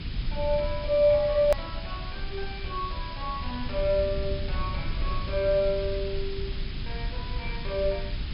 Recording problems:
low-pass filter; nothing above 5.5 kHz
background hiss; SNR 14 dB
low-frequency rumble; below 84 Hz, SNR 8 dB
edit click; at 1.5 s

